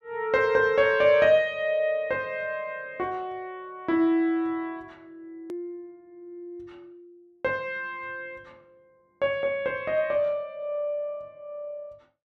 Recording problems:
edit click; at 5.5 s

